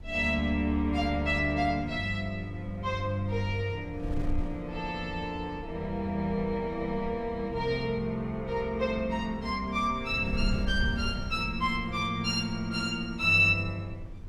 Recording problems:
wind noise; below 92 Hz, SNR 12 dB

